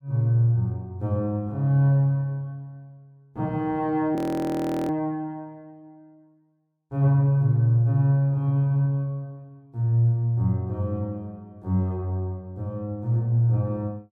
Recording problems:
audio freezing; at 4 s for 0.5 s

